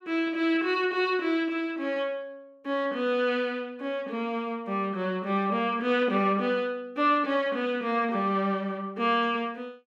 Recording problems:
none

